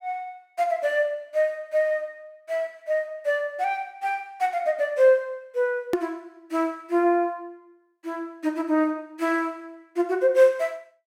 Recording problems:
hard cut with a click; at 6 s

